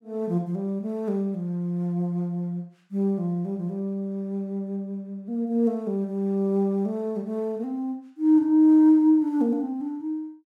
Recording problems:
none

